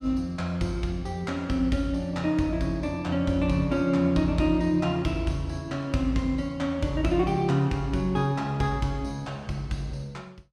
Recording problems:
none

